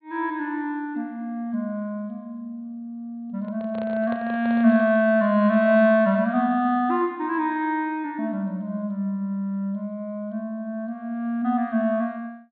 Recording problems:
treble cut off; nothing above 4.3 kHz
microphone handling noise; from 3.5 to 5 s; peak -9 dB vs average level

